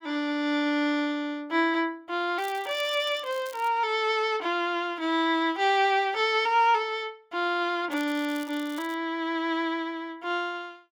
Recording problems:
crackle; from 2.5 to 3.5 s and from 8 to 9 s; loose cable, SNR 21 dB

